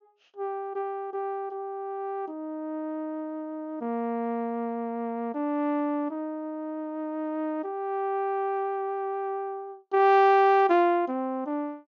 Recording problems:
treble cut off; nothing above 6.8 kHz

